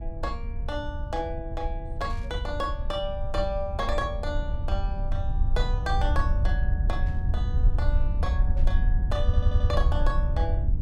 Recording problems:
rumble; below 74 Hz, SNR -5 dB
burst of static; 4 times, first at 2 s; peak -15 dB vs average level
stutter; at 9.5 s

